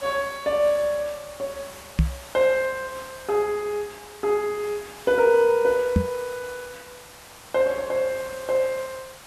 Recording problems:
hiss; SNR 18 dB
knock on the microphone; at 2 s and at 6 s; peak +7 dB vs average level

